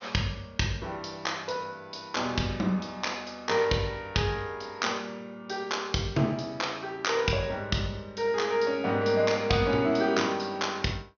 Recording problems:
treble cut off; nothing above 6.4 kHz

